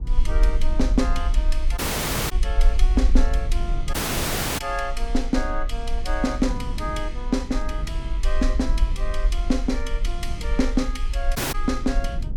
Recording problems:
low-frequency rumble; below 46 Hz, SNR -1 dB
wind noise; below 180 Hz, SNR 10 dB
dropout; at 2 s for 0.5 s, at 4 s for 0.5 s and at 11 s

